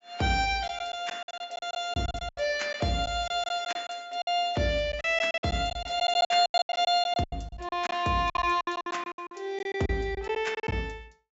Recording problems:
low-pass filter; nothing above 8 kHz
lost packets; 16% of the sound replaced, filled with silence

